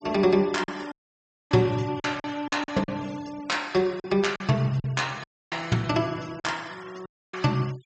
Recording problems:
treble missing; nothing above 8 kHz
noise reduction artefacts; signal-to-artefact ratio 23 dB
packet loss; 7% of the sound replaced, filled with silence
audio cutting out; at 1 s for 0.5 s, at 5 s and at 7 s

